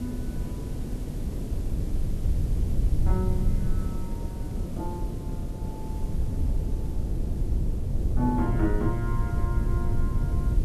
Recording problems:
background hiss; slope 0 dB per octave, SNR 18 dB
low-frequency rumble; below 80 Hz, SNR -3 dB
wind on the microphone; below 310 Hz, SNR 3 dB

